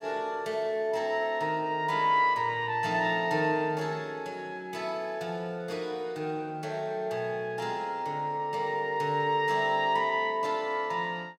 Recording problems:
none

